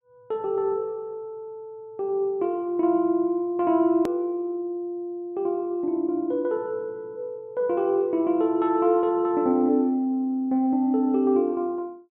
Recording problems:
edit click; at 4 s

